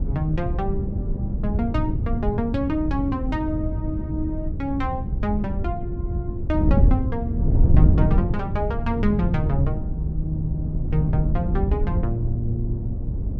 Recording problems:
wind on the microphone; below 120 Hz, SNR -2 dB

